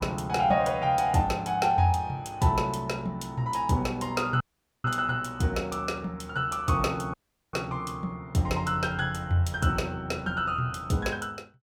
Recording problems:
audio cutting out; at 4.5 s and at 7 s

